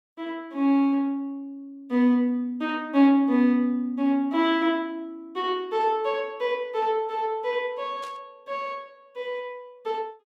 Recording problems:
static burst; at 8 s; peak -15 dB vs average level

